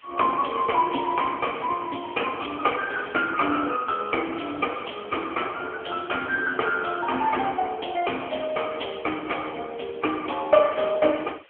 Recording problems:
telephone audio; 220 Hz to 3.3 kHz, AMR-NB
background hiss; SNR 27 dB

